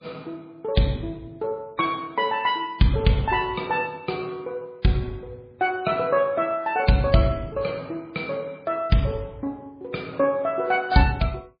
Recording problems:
codec artefacts; MP3, log-spectral distance 2 dB, nothing above 4.6 kHz

